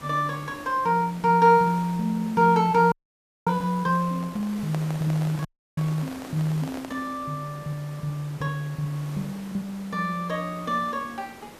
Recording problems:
background hiss; slope -5 dB per octave, SNR 18 dB
frozen audio; at 3 s for 0.5 s and at 5.5 s
microphone handling noise; from 4 to 7 s; peak -7 dB vs average level

